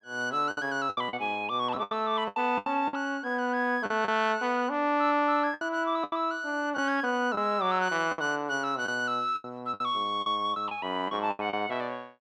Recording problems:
packet loss; 10% of the sound replaced, filled with the last packet

